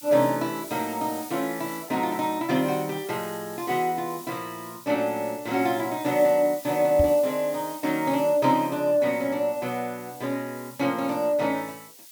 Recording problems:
hiss; SNR 16 dB
microphone thump; at 7 s; peak +2 dB vs average level

